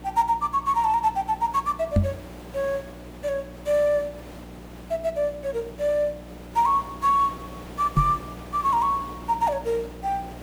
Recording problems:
electrical hum; 60 Hz, harmonics up to 360 Hz, SNR 18 dB
hiss; slope -6 dB per octave, SNR 19 dB
knock on the microphone; at 2 s and at 8 s; peak +7 dB vs average level

